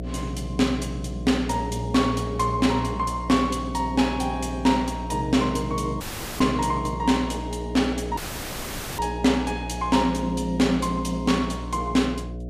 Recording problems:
hum; 60 Hz, harmonics up to 720 Hz, SNR 9 dB
dropout; at 6 s and at 8 s for 1 s

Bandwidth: 15 kHz